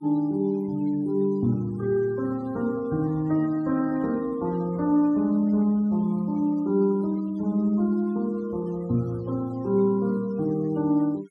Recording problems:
noise reduction artefacts; signal-to-artefact ratio 26 dB

